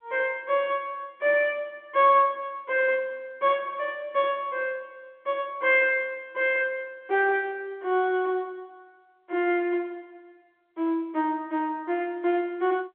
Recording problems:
telephone audio; 260 Hz to 3.5 kHz, G.711

